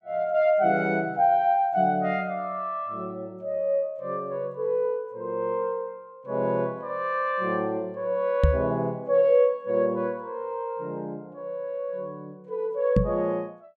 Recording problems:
microphone bump; at 8.5 s and at 13 s; peak +8 dB vs average level

